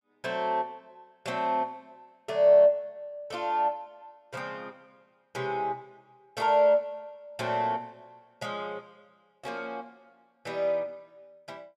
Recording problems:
none

